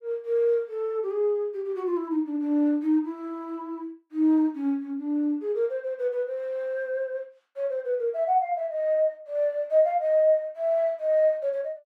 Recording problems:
none

